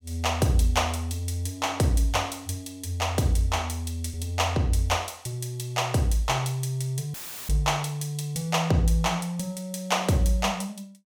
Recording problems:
dropout; at 7 s; filled with static

